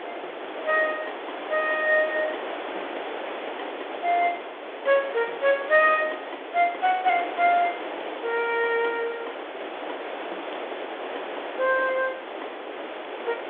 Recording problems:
telephone audio; 280 Hz to 3.6 kHz, G.726
hiss; SNR 10 dB

